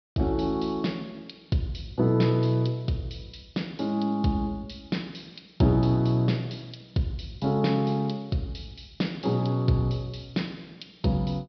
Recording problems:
low-pass filter; nothing above 5.5 kHz

